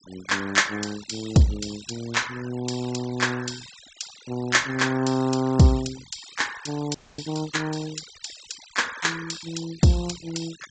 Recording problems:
treble cut off; nothing above 8 kHz
denoising artefacts; signal-to-artefact ratio 17 dB
frozen audio; at 7 s

